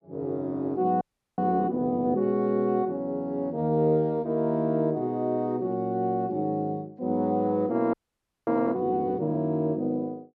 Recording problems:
frozen audio; at 1 s and at 8 s for 0.5 s

